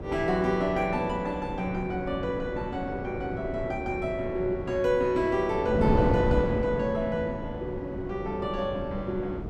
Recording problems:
wind on the microphone; below 410 Hz, SNR 5 dB

